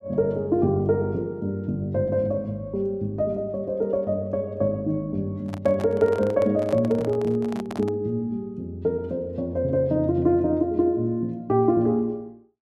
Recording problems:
microphone handling noise; from 5.5 to 8 s; peak -8 dB vs average level

